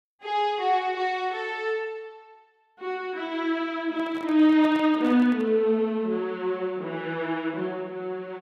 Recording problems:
handling noise; from 4 to 5.5 s; peak -11 dB vs average level

